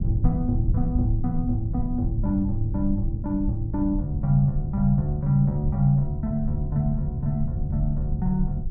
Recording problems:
rumble; below 110 Hz, SNR 5 dB

